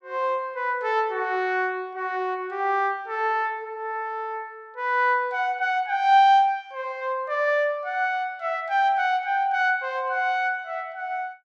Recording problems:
none

